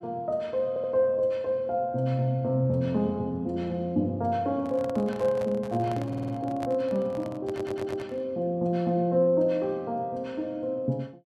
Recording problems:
stutter; at 0.5 s, at 6 s and at 7.5 s
microphone handling noise; from 4.5 to 8.5 s; peak -5 dB vs average level

